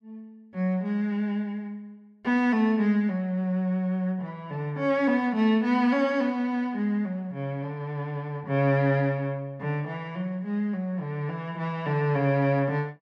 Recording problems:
none

